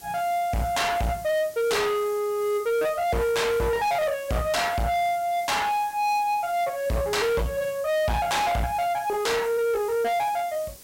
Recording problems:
distorted audio; soft clipping, signal-to-distortion ratio 7 dB
background hiss; SNR 19 dB

